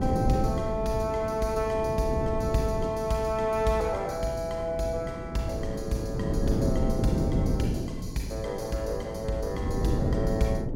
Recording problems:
wind on the microphone; below 280 Hz, SNR 2 dB

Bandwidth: 16.5 kHz